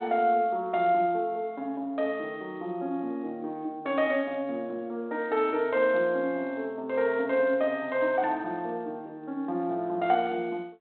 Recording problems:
telephone audio; 190 Hz to 3.8 kHz, G.726

